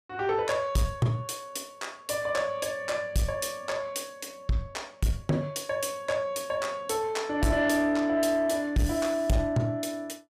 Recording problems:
distortion; soft clipping, signal-to-distortion ratio 12 dB

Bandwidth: 15.5 kHz